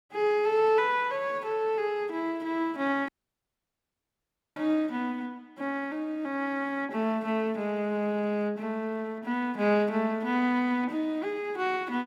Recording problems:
audio cutting out; at 3 s for 1.5 s

